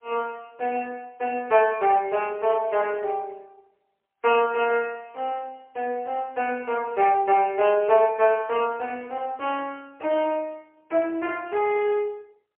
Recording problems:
phone line; 340 Hz to 3.3 kHz, AMR-NB, then MP3

